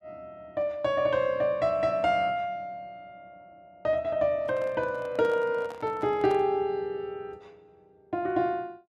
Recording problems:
handling noise; from 4.5 to 6.5 s; peak -10 dB vs average level

